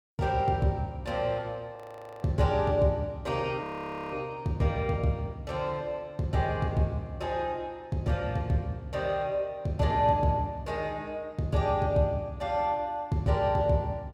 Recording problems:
audio freezing; at 2 s and at 3.5 s

